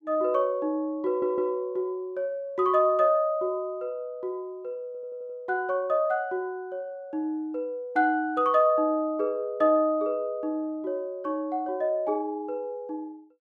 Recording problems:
stutter; at 1 s and at 5 s

